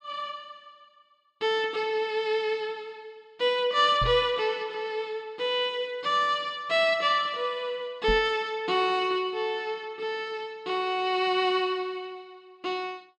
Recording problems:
knock on the microphone; at 4 s and at 8 s; peak -1 dB vs average level

